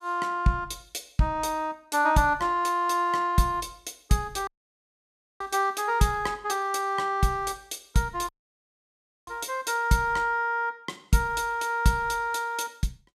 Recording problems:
audio cutting out; at 4.5 s for 1 s and at 8.5 s for 1 s

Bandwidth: 14 kHz